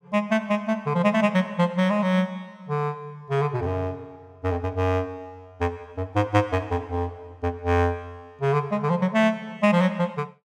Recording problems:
none

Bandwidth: 16 kHz